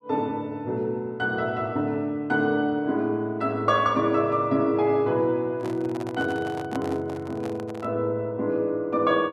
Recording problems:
handling noise; from 5.5 to 8 s; peak -5 dB vs average level

